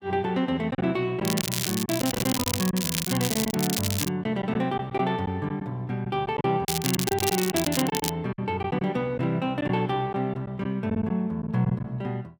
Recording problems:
lost packets; 7% of the sound replaced, filled with silence
crackling; from 1 to 4 s and from 6.5 to 8 s; loose cable, SNR 2 dB

